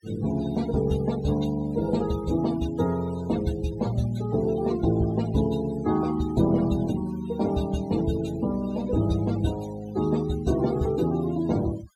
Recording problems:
noise reduction artefacts; signal-to-artefact ratio 17 dB

